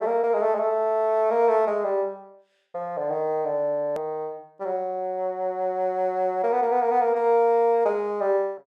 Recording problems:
click at an edit; at 4 s

